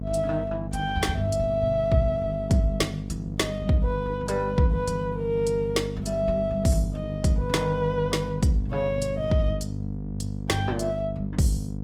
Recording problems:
lossy compression; Opus, log-spectral distance 2 dB, nothing above 19 kHz
hum; 50 Hz, harmonics up to 550 Hz, SNR 7 dB

